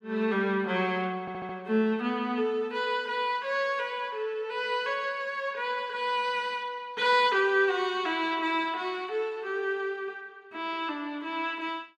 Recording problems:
stutter; at 1 s

